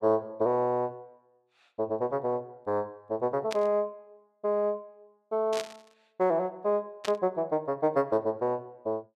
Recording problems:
burst of static; at 3.5 s, at 5.5 s and at 7 s; peak -3 dB vs average level

